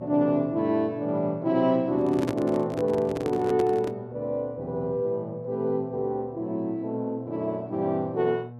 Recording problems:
hum; 60 Hz, harmonics up to 1.1 kHz, SNR 17 dB
handling noise; from 2 to 4 s; peak 0 dB vs average level

